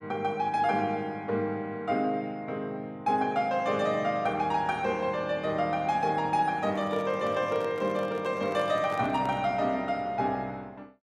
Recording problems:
handling noise; from 6.5 to 9.5 s; peak -8 dB vs average level

